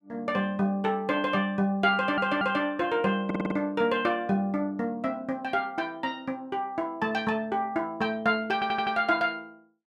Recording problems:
audio stuttering; at 2 s, at 3.5 s and at 8.5 s

